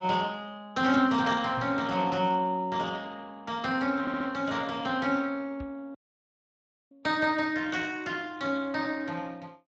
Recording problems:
lossy codec; Speex, log-spectral distance 4 dB
knock on the microphone; at 1.5 s and at 5.5 s; peak -7 dB vs average level
stutter; at 4 s
dropout; at 6 s for 1 s

